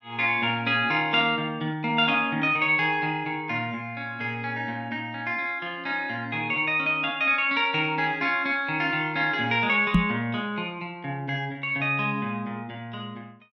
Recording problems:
microphone bump; at 10 s; peak +8 dB vs average level

